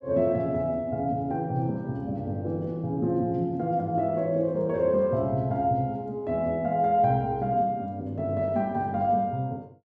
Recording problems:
none

